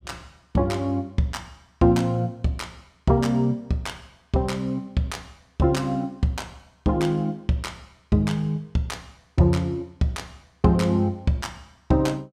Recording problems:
none

